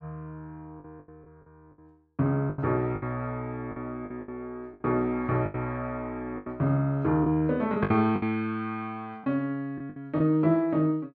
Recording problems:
packet loss; 9% of the sound replaced, filled with the last packet

